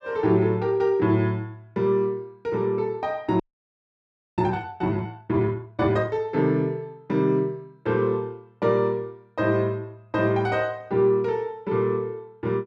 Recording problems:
frozen audio; at 3.5 s for 1 s

